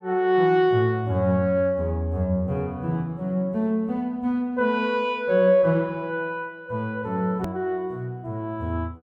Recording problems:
hard cut with a click; at 7.5 s

